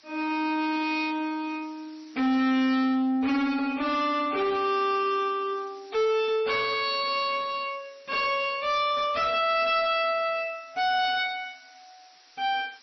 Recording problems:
lossy compression; MP3, log-spectral distance 8 dB
distortion; soft clipping, signal-to-distortion ratio 7 dB
hiss; slope +2 dB per octave, SNR 30 dB

